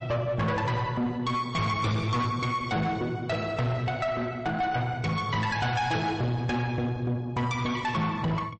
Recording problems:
codec artefacts; MP3, log-spectral distance 2 dB, nothing above 8 kHz
distortion; soft clipping, signal-to-distortion ratio 7 dB

